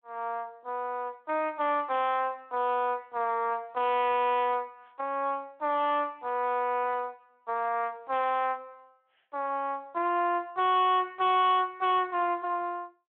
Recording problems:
phone line; 300 Hz to 3.7 kHz, Speex
distorted audio; hard clipping, signal-to-distortion ratio 11 dB

